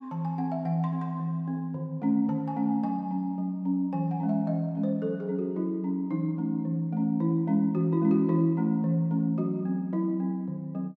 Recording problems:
none

